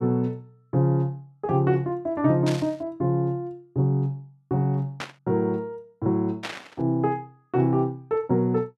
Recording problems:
static burst; at 2.5 s, at 5 s and at 6.5 s; peak -3 dB vs average level

